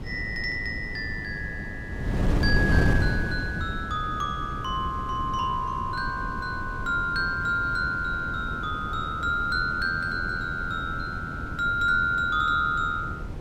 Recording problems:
wind on the microphone; below 220 Hz, SNR 5 dB

